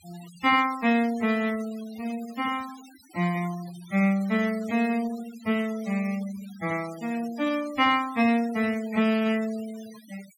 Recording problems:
noise reduction artefacts; signal-to-artefact ratio 20 dB

